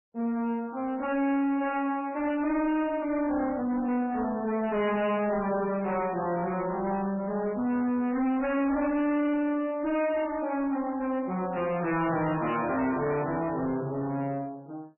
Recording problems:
lossy codec; MP3, log-spectral distance 3 dB, nothing above 2.5 kHz
distorted audio; soft clipping, signal-to-distortion ratio 7 dB

